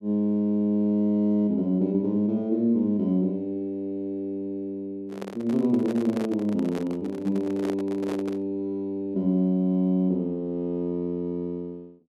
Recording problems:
microphone handling noise; from 5 to 8.5 s; peak -2 dB vs average level

